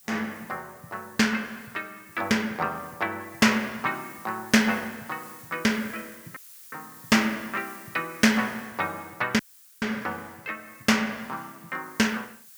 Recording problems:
background hiss; slope +3 dB per octave, SNR 20 dB
audio cutting out; at 6.5 s and at 9.5 s

